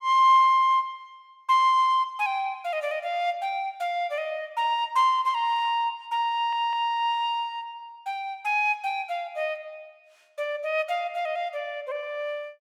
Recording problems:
stutter; at 6.5 s

